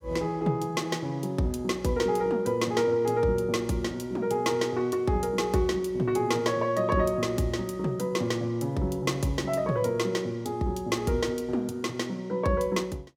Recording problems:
none

